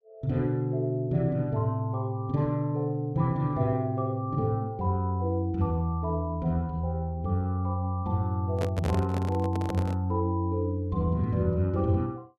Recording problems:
microphone handling noise; from 8.5 to 10 s; peak -1 dB vs average level

